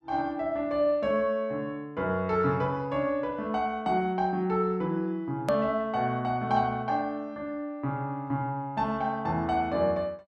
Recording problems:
click at an edit; at 5.5 s

